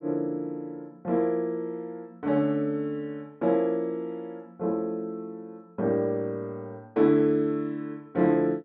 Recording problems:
none

